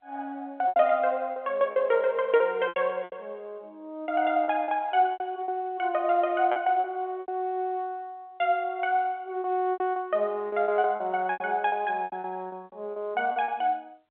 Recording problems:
telephone audio; 240 Hz to 3.7 kHz, G.711
packet loss; 12% of the sound replaced, filled with repeated pitch periods

